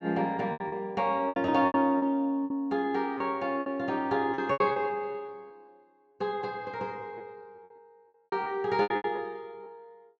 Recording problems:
treble cut off; nothing above 8 kHz
lost packets; 12% of the sound replaced, filled with repeated pitch periods

